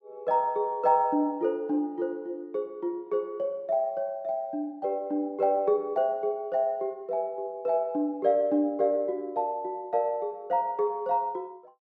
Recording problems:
none

